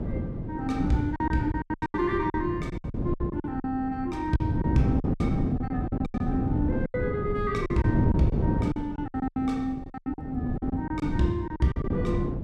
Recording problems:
hum; 60 Hz, harmonics up to 1.4 kHz, SNR 24 dB
wind on the microphone; below 260 Hz, SNR 1 dB
lost packets; 15% of the sound replaced, filled with silence

